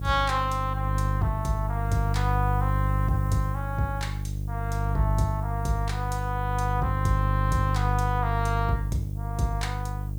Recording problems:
electrical hum; 50 Hz, harmonics up to 450 Hz, SNR -1 dB
hiss; SNR 24 dB

